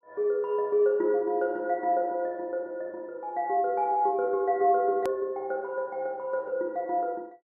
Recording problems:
hard cut with a click; at 5 s

